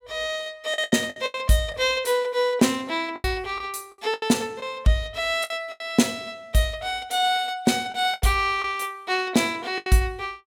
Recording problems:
packet loss; 8% of the sound replaced, filled with the last packet

